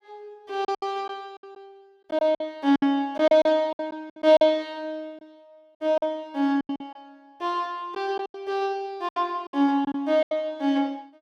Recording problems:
packet loss; 12% of the sound replaced, filled with silence

